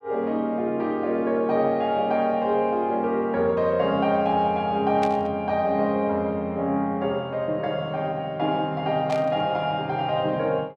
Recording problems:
static burst; at 5 s and at 9 s; peak -6 dB vs average level

